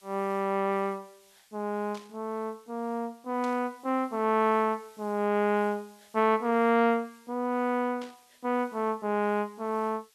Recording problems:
background hiss; slope +3 dB per octave, SNR 30 dB
static burst; at 2 s, at 3.5 s and at 8 s; peak -13 dB vs average level

